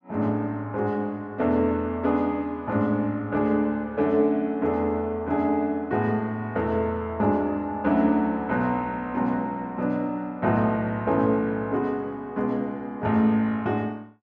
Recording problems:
none

